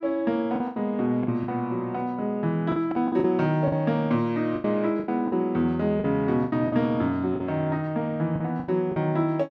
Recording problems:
lost packets; 10% of the sound replaced, filled with the last packet

